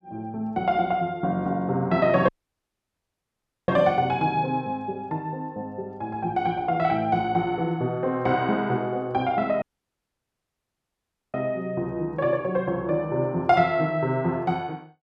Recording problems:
dropout; at 2.5 s for 1.5 s and at 9.5 s for 1.5 s

